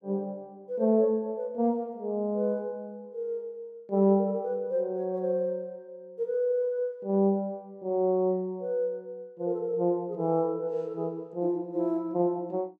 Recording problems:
none

